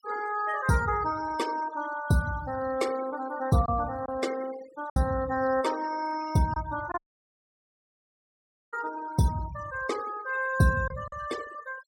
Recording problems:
denoising artefacts; signal-to-artefact ratio 16 dB
packet loss; 1.7% of the sound replaced, filled with silence
dropout; at 7 s for 1.5 s

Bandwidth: 16.5 kHz